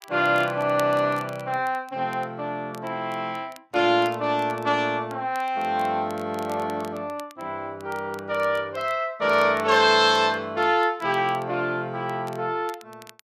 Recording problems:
crackling; vinyl, SNR 25 dB

